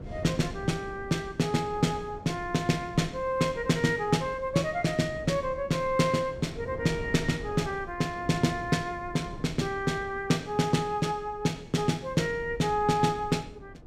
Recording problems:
rumble; below 240 Hz, SNR 18 dB
wind noise; below 370 Hz, SNR 19 dB

